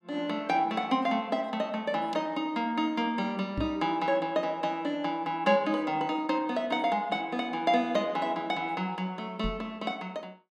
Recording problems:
microphone thump; at 3.5 s and at 9.5 s; peak 0 dB vs average level

